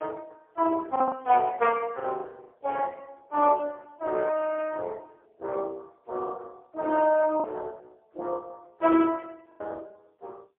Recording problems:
phone line; 300 Hz to 3.3 kHz, AMR-NB, then MP3
packet loss; 3% of the sound replaced, filled with the last packet

